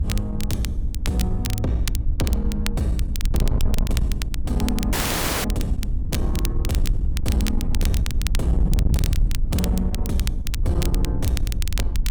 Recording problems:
distorted audio; soft clipping, signal-to-distortion ratio 11 dB
hum; 50 Hz, harmonics up to 300 Hz, SNR 14 dB
wind noise; below 72 Hz, SNR -1 dB
crackle; vinyl, SNR 8 dB
dropout; at 5 s for 0.5 s

